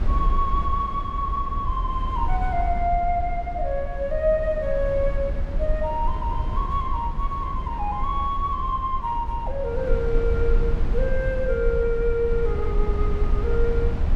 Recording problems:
low-frequency rumble; below 62 Hz, SNR 2 dB

